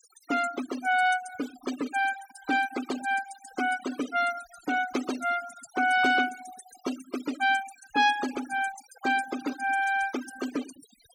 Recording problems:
noise reduction artefacts; signal-to-artefact ratio 13 dB

